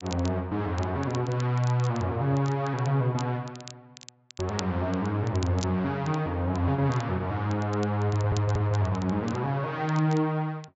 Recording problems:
treble missing; nothing above 8 kHz
crackling; vinyl, SNR 19 dB
stutter; at 8 s

